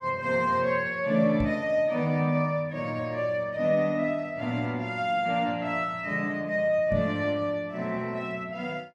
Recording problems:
knock on the microphone; at 1.5 s and at 7 s; peak 0 dB vs average level

